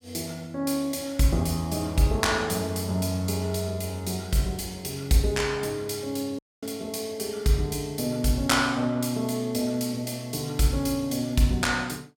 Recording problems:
dropout; at 6.5 s

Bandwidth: 17 kHz